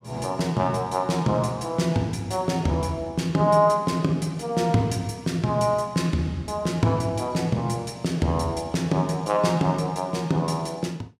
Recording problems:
none

